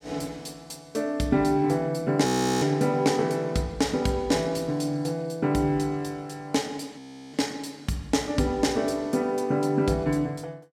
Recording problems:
audio freezing; at 2.5 s and at 7 s

